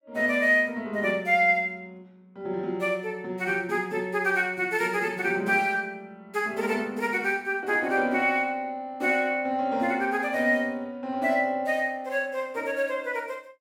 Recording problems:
none

